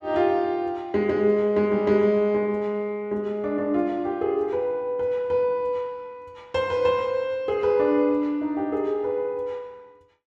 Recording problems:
none

